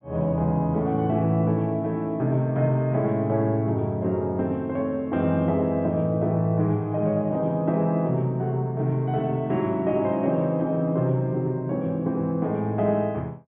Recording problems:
treble missing; nothing above 3.7 kHz

